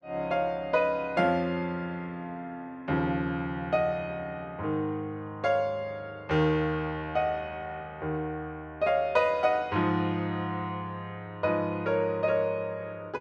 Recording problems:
none

